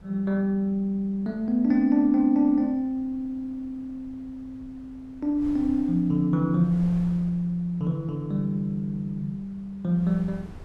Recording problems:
wind noise; below 210 Hz, SNR 23 dB

